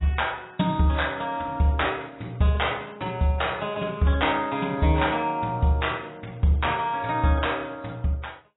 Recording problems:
lossy codec; AAC, log-spectral distance 5 dB, nothing above 3.8 kHz

